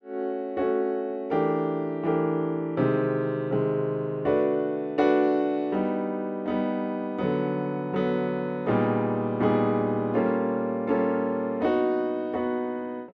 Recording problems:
none

